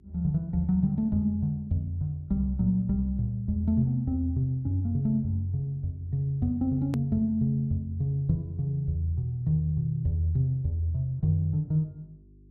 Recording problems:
electrical hum; 50 Hz, harmonics up to 400 Hz, SNR 27 dB
click at an edit; at 7 s

